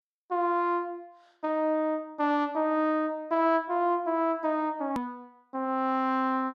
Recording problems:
edit click; at 5 s

